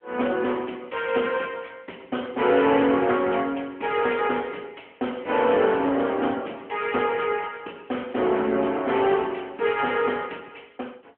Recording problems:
phone line; 220 Hz to 3.2 kHz, AMR-NB

